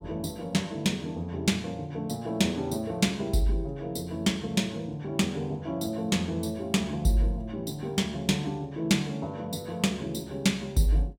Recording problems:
none

